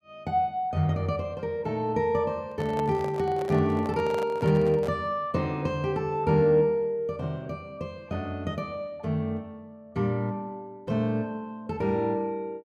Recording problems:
handling noise; from 2.5 to 5 s; peak -5 dB vs average level

